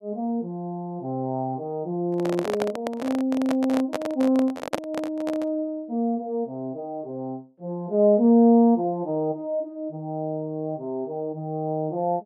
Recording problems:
handling noise; from 2 to 5.5 s; peak +3 dB vs average level

